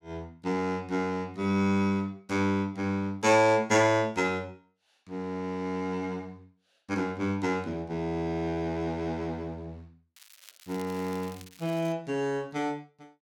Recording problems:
crackling; from 10 to 12 s; loose cable, SNR 21 dB

